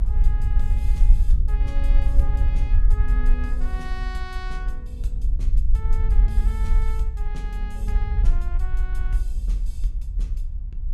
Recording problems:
low-frequency rumble; below 48 Hz, SNR -14 dB
wind on the microphone; below 560 Hz, SNR 21 dB

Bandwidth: 14.5 kHz